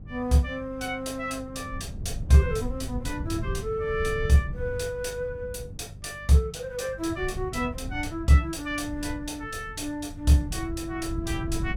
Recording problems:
hum; 50 Hz, harmonics up to 450 Hz, SNR 21 dB
wind noise; below 120 Hz, SNR 10 dB

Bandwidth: 17.5 kHz